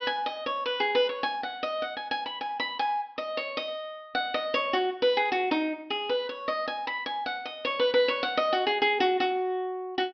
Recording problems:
low-pass filter; nothing above 5.5 kHz

